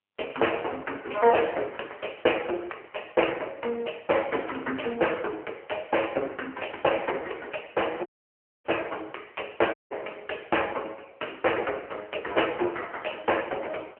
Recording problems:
telephone audio; 300 Hz to 3.1 kHz, AMR-NB
audio cutting out; at 8 s for 0.5 s and at 9.5 s

